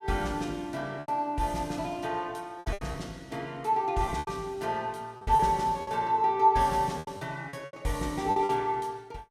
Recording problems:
lost packets; 9% of the sound replaced, filled with repeated pitch periods

